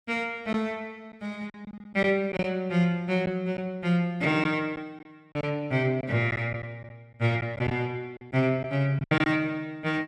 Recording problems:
packet loss; 7% of the sound replaced, filled with silence

